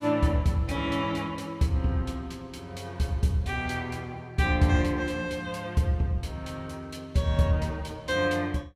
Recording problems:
none

